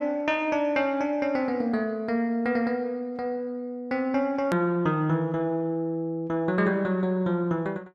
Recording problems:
hard cut with a click; at 4.5 s

